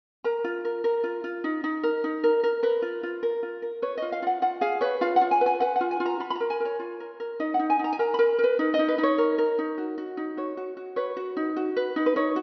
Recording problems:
treble cut off; nothing above 5.8 kHz

